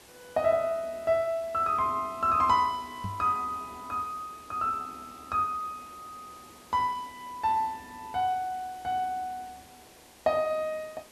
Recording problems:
background hiss; SNR 22 dB
microphone bump; at 3 s; peak -4 dB vs average level

